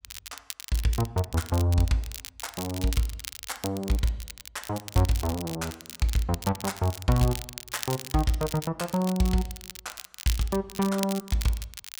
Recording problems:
crackle; vinyl, SNR 11 dB

